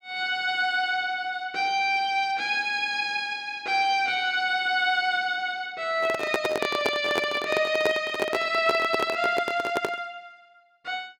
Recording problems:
handling noise; from 6 to 10 s; peak +3 dB vs average level

